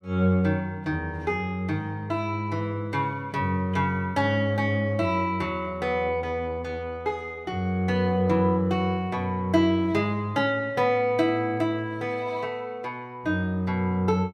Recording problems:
none

